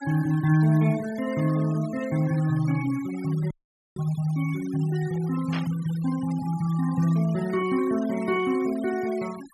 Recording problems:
denoising artefacts; signal-to-artefact ratio 20 dB
audio cutting out; at 3.5 s
burst of static; at 5.5 s; peak -6 dB vs average level

